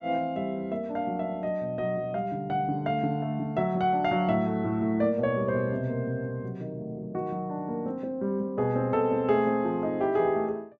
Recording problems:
none

